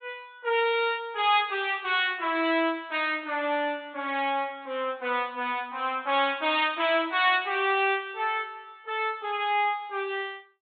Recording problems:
low-pass filter; nothing above 4 kHz

